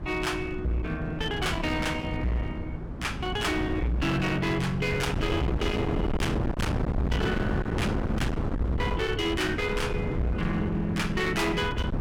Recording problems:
distortion; hard clipping, uneven, signal-to-distortion ratio 6 dB
wind noise; below 340 Hz, SNR 3 dB

